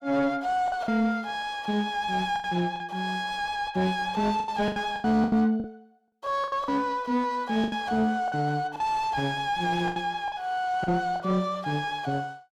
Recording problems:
distortion; soft clipping, signal-to-distortion ratio 10 dB
packet loss; 9% of the sound replaced, filled with the last packet

